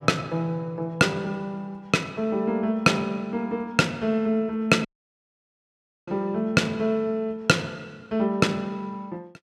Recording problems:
audio cutting out; at 5 s for 1 s

